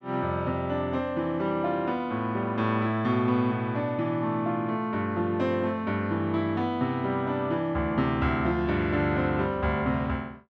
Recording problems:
none

